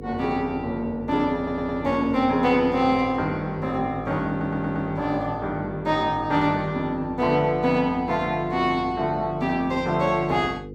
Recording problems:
hum; 50 Hz, harmonics up to 500 Hz, SNR 13 dB
audio stuttering; at 1.5 s and at 4.5 s

